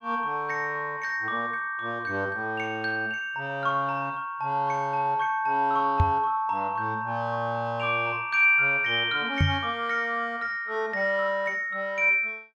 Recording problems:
knock on the microphone; at 6 s and at 9.5 s; peak +6 dB vs average level

